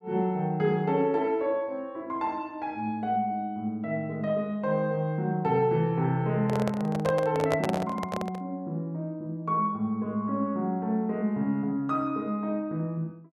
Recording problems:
microphone handling noise; from 6.5 to 8.5 s; peak +3 dB vs average level

